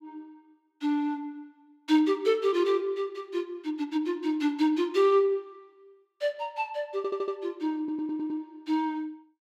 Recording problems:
audio stuttering; at 7 s and at 8 s

